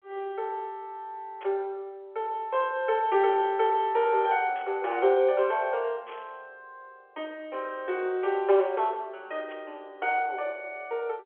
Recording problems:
phone line; 320 Hz to 3.6 kHz, G.711
burst of static; 4 times, first at 1.5 s; peak -14 dB vs average level

